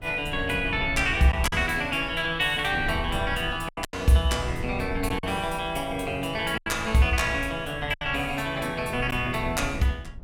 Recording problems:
wind on the microphone; below 120 Hz, SNR 12 dB
lost packets; 4% of the sound replaced, filled with silence

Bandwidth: 17 kHz